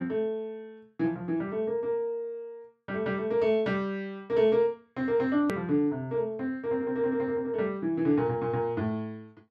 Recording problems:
hard cut with a click; at 5.5 s

